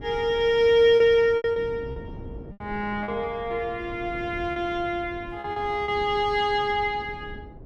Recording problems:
wind on the microphone; below 280 Hz, SNR 17 dB
lost packets; 6% of the sound replaced, filled with repeated pitch periods

